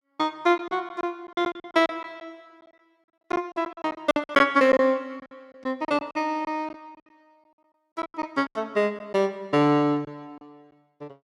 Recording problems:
packet loss; 13% of the sound replaced, filled with silence

